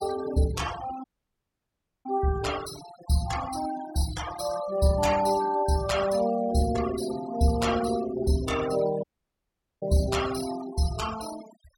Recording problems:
denoising artefacts; signal-to-artefact ratio 12 dB
audio cutting out; at 1 s for 1 s and at 9 s for 1 s

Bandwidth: 17 kHz